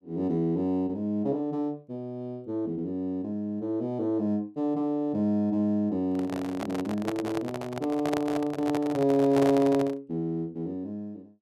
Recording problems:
handling noise; from 6 to 10 s; peak +1 dB vs average level

